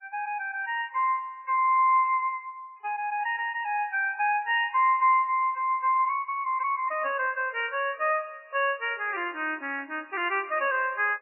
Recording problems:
codec artefacts; MP3, log-spectral distance 3 dB, nothing above 2.5 kHz

